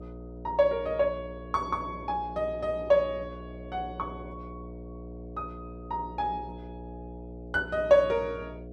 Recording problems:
mains hum; 60 Hz, harmonics up to 720 Hz, SNR 14 dB

